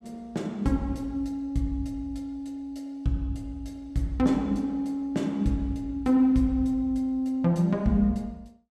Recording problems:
none

